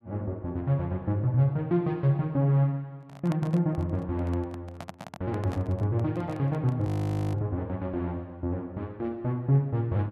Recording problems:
microphone handling noise; from 3 to 7.5 s; peak -5 dB vs average level
audio freezing; at 7 s

